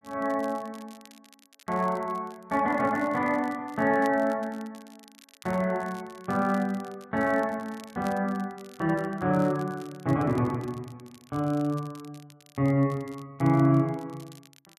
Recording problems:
crackling; vinyl, SNR 26 dB

